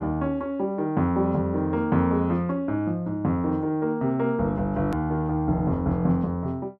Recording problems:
edit click; at 5 s

